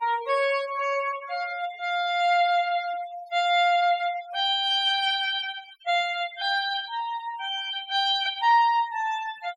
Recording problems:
denoising artefacts; signal-to-artefact ratio 17 dB

